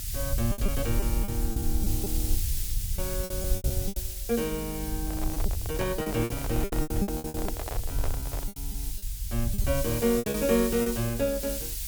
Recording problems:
hiss; SNR 5 dB
low-frequency rumble; below 70 Hz, SNR 4 dB
packet loss; 14% of the sound replaced, filled with repeated pitch periods
crackling; at 3.5 s; loose cable, SNR 26 dB
handling noise; from 5 to 8.5 s; peak -1 dB vs average level

